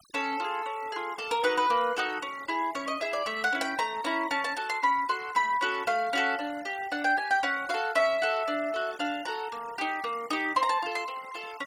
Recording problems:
noise reduction artefacts; signal-to-artefact ratio 20 dB

